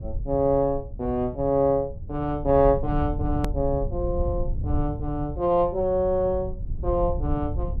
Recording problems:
rumble; below 90 Hz, SNR 8 dB
click at an edit; at 3.5 s

